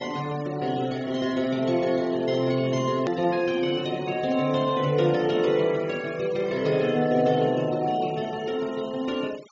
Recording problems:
low-pass filter; nothing above 7.3 kHz
denoising artefacts; signal-to-artefact ratio 20 dB
click at an edit; at 3 s

